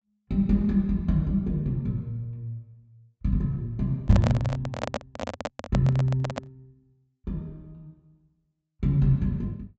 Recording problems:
low-pass filter; nothing above 8 kHz
microphone handling noise; from 4 to 6.5 s; peak +1 dB vs average level

